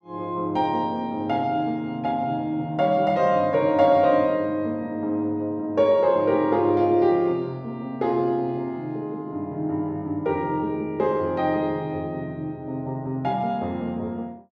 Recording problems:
none

